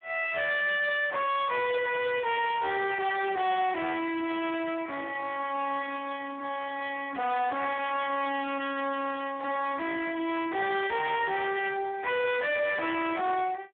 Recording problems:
phone line; 280 Hz to 3.5 kHz, Speex
distortion; soft clipping, signal-to-distortion ratio 6 dB

